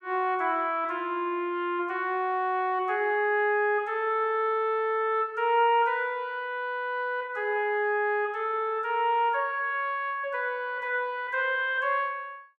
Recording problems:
none

